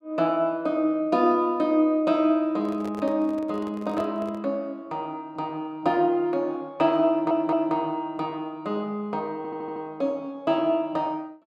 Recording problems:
handling noise; from 2.5 to 4.5 s; peak -9 dB vs average level
audio stuttering; at 7 s and at 9.5 s

